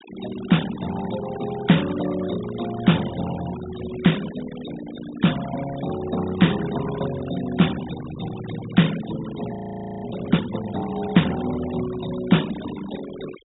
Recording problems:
low-pass filter; nothing above 4 kHz
denoising artefacts; signal-to-artefact ratio 14 dB
frozen audio; at 9.5 s

